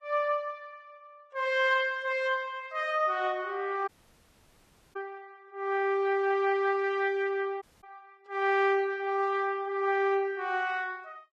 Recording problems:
lossy compression; Vorbis, log-spectral distance 2 dB
dropout; at 4 s for 1 s and at 7.5 s

